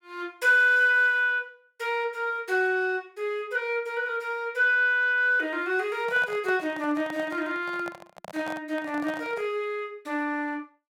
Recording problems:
microphone handling noise; from 6 to 9.5 s; peak -9 dB vs average level

